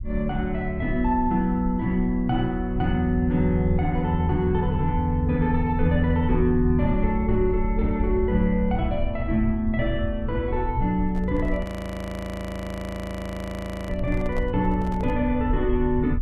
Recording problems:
rumble; below 72 Hz, SNR 7 dB
handling noise; from 11 to 15 s; peak -9 dB vs average level
audio freezing; at 12 s for 2.5 s

